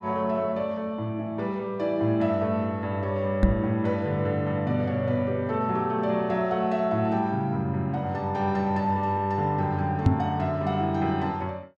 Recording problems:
knock on the microphone; at 3.5 s and at 10 s; peak +9 dB vs average level

